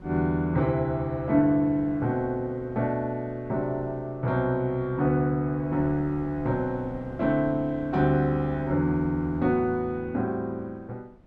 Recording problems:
wind noise; below 340 Hz, SNR 21 dB

